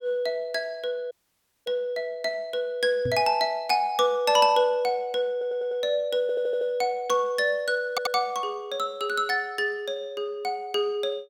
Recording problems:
dropout; at 1 s for 0.5 s
microphone thump; at 3 s; peak -3 dB vs average level
audio stuttering; at 5.5 s, at 6 s and at 8 s

